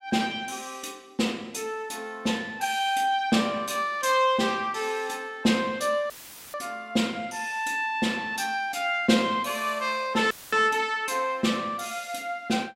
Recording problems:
audio cutting out; at 6 s and at 10 s; filled with static

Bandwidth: 16 kHz